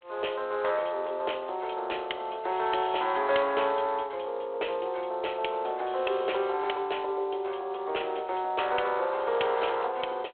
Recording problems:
phone line; 340 Hz to 3.4 kHz, G.726

